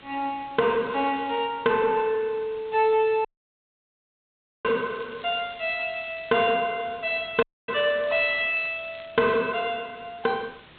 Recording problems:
low-pass filter; nothing above 4 kHz
distortion; soft clipping, signal-to-distortion ratio 10 dB
background hiss; SNR 25 dB
crackling; at 1 s, from 4.5 to 6.5 s and from 7.5 to 9.5 s; loose cable, SNR 24 dB
audio cutting out; at 3.5 s for 1.5 s and at 7.5 s

